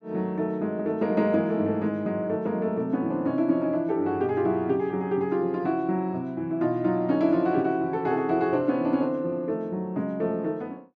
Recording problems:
none

